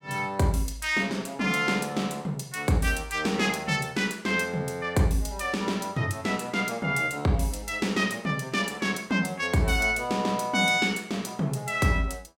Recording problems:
none

